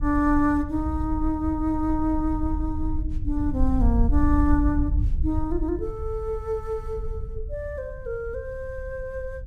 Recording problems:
wind on the microphone; below 72 Hz, SNR 2 dB

